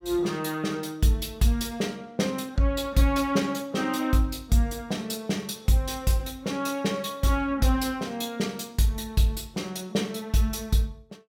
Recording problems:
none

